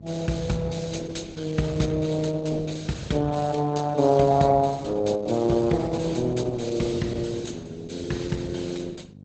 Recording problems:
lossy codec; Opus, log-spectral distance 4 dB, nothing above 7.8 kHz
hum; 50 Hz, harmonics up to 550 Hz, SNR 19 dB

